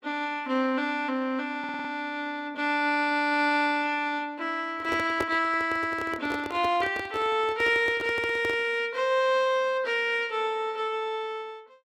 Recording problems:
stutter; at 1.5 s
microphone handling noise; from 4.5 to 8.5 s; peak +1 dB vs average level

